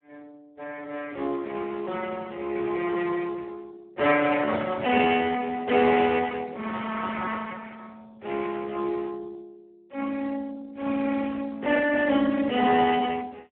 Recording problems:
telephone audio; 220 Hz to 2.7 kHz, Speex

